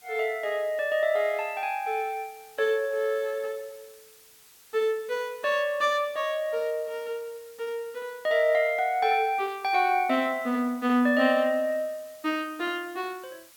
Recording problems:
background hiss; slope +1 dB per octave, SNR 25 dB

